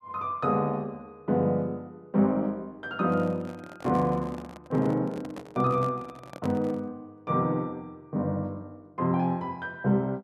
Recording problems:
handling noise; from 3 to 7 s; peak -5 dB vs average level

